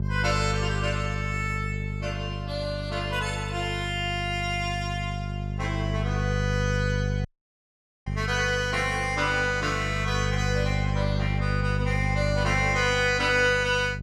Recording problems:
mains hum; 50 Hz, harmonics up to 450 Hz, SNR 3 dB
audio cutting out; at 7.5 s for 1 s

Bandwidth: 16 kHz